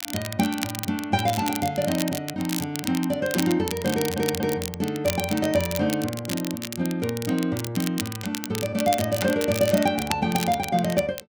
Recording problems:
crackle; vinyl, SNR 8 dB
stutter; at 4 s

